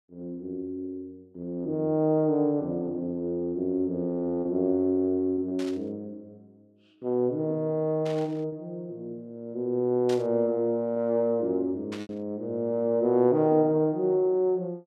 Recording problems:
packet loss; 1.7% of the sound replaced, filled with repeated pitch periods
static burst; 4 times, first at 5.5 s; peak -9 dB vs average level

